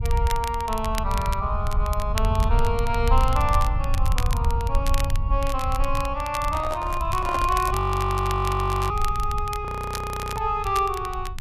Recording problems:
low-frequency rumble; below 80 Hz, SNR 2 dB
crackling; vinyl, SNR 12 dB
microphone handling noise; from 6.5 to 8 s; peak 0 dB vs average level
frozen audio; at 8 s for 1 s and at 9.5 s for 0.5 s

